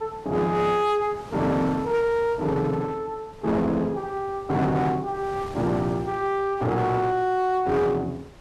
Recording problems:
distorted audio; hard clipping, uneven, signal-to-distortion ratio 9 dB
wind noise; below 940 Hz, SNR 20 dB

